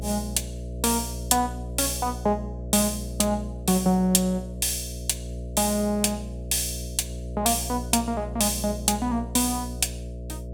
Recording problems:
hum; 60 Hz, harmonics up to 660 Hz, SNR 10 dB

